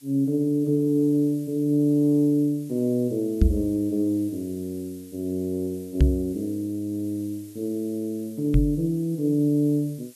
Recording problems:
background hiss; SNR 25 dB
knock on the microphone; at 3.5 s, at 6 s and at 8.5 s; peak +9 dB vs average level

